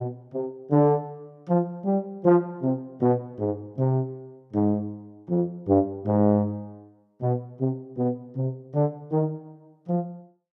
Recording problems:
none

